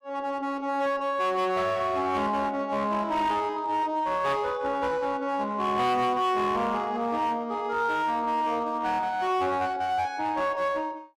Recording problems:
distorted audio; hard clipping, uneven, signal-to-distortion ratio 11 dB

